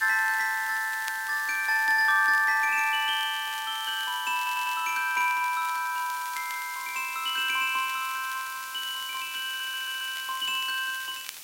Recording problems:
hiss; slope +3 dB per octave, SNR 14 dB
crackling; vinyl, SNR 19 dB
stutter; at 4.5 s and at 9.5 s

